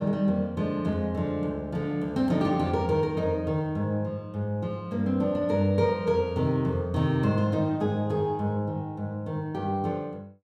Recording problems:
none

